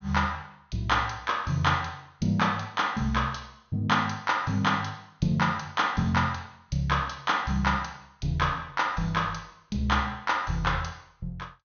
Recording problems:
low-pass filter; nothing above 6.4 kHz

